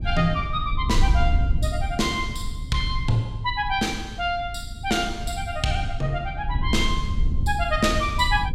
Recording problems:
rumble; below 76 Hz, SNR 3 dB

